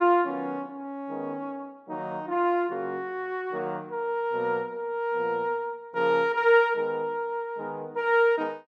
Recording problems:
none

